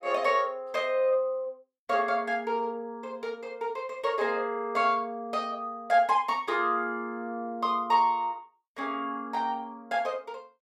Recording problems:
none

